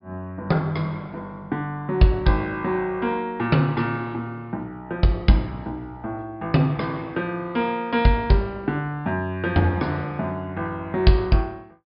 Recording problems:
low-pass filter; nothing above 5.5 kHz

